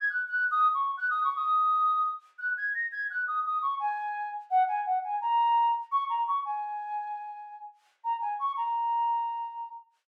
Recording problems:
none

